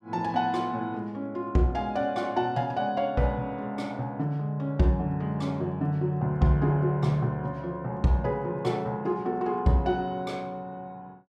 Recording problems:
none

